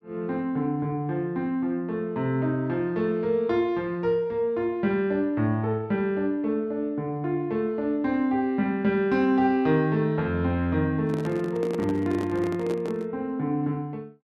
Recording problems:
microphone handling noise; from 11 to 13 s; peak -4 dB vs average level

